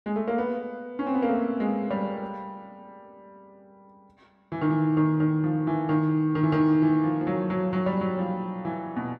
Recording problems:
none

